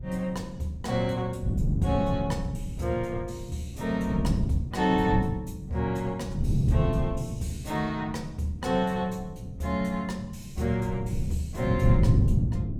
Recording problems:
wind noise; below 170 Hz, SNR 0 dB

